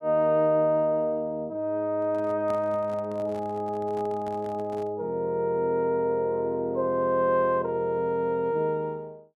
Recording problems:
handling noise; from 2 to 5 s; peak -11 dB vs average level

